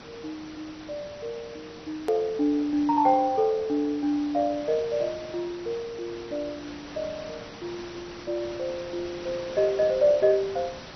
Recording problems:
lossy codec; MP2, log-spectral distance 9 dB, nothing above 13.1 kHz
background hiss; slope -3 dB per octave, SNR 16 dB
hard cut with a click; at 2 s

